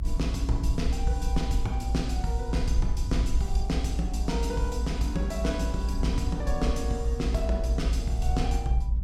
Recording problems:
low-frequency rumble; below 60 Hz, SNR -2 dB

